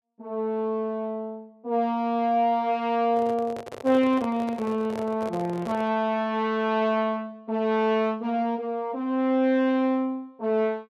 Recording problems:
microphone handling noise; from 3 to 6 s; peak -8 dB vs average level

